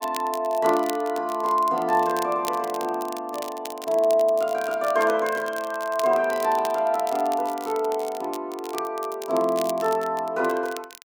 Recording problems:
crackle; vinyl, SNR 17 dB

